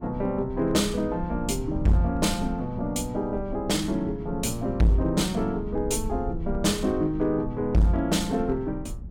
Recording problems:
distortion; hard clipping, signal-to-distortion ratio 6 dB
low-frequency rumble; below 88 Hz, SNR 12 dB

